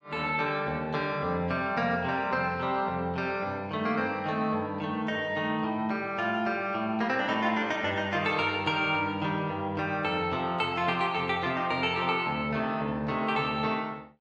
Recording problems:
none

